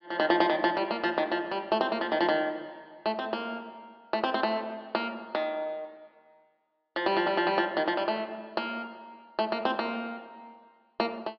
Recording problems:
treble missing; nothing above 5.5 kHz

